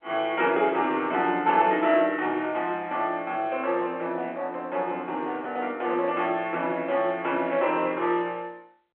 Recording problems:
telephone audio; 280 Hz to 3.3 kHz, G.711

